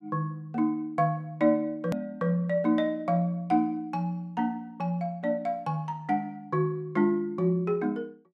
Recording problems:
hard cut with a click; at 2 s

